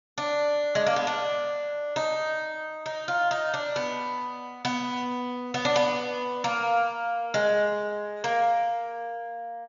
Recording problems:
treble missing; nothing above 7 kHz

